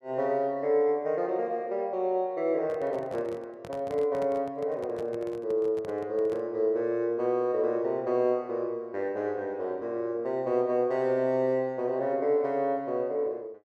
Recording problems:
handling noise; from 2.5 to 6.5 s; peak -9 dB vs average level

